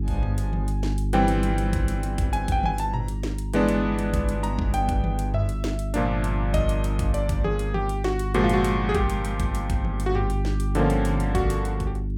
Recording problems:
hum; 50 Hz, harmonics up to 400 Hz, SNR 2 dB

